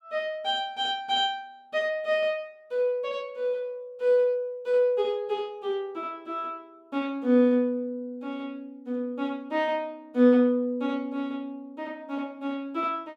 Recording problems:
none

